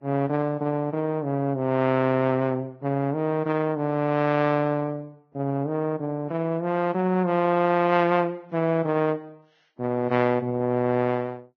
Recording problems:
lossy codec; Vorbis, log-spectral distance 2 dB, nothing above 6.3 kHz

